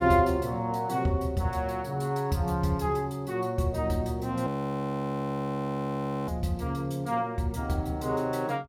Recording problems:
audio freezing; at 4.5 s for 2 s

